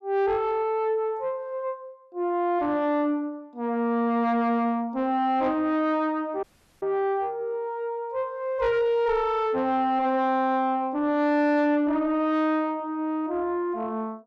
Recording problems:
distortion; soft clipping, signal-to-distortion ratio 11 dB
dropout; at 6.5 s

